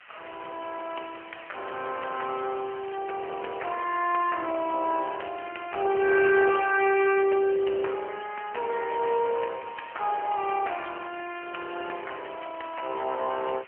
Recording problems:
telephone audio; 340 Hz to 3.1 kHz, AMR-NB
hiss; SNR 20 dB

